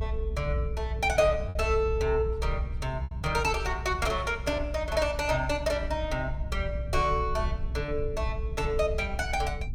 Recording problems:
low-frequency rumble; below 72 Hz, strongest tone 60 Hz, SNR 5 dB
packet loss; 1.8% of the sound replaced, filled with repeated pitch periods

